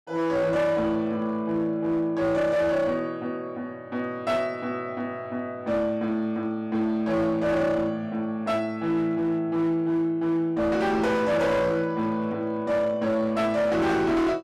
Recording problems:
distortion; hard clipping, signal-to-distortion ratio 10 dB

